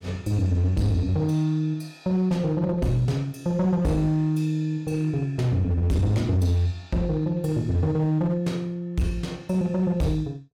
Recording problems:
distortion; hard clipping, signal-to-distortion ratio 11 dB

